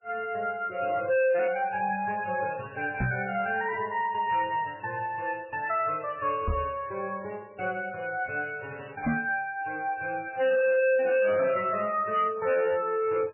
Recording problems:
lossy codec; MP3, log-spectral distance 3 dB, nothing above 2.4 kHz
distorted audio; hard clipping, signal-to-distortion ratio 6 dB
microphone thump; at 3 s, at 6.5 s and at 9 s; peak +4 dB vs average level

